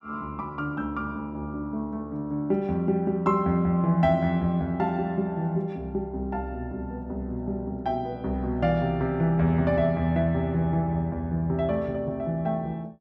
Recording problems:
none

